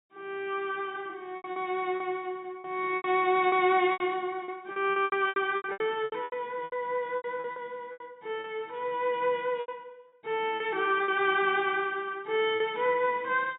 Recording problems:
treble cut off; nothing above 4 kHz
packet loss; 12% of the sound replaced, filled with repeated pitch periods

